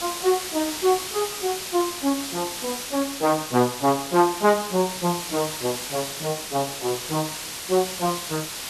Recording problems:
hiss; slope +1 dB per octave, SNR 6 dB

